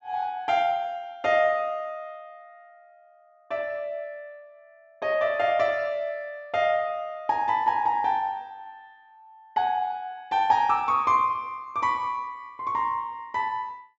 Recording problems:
low-pass filter; nothing above 8 kHz

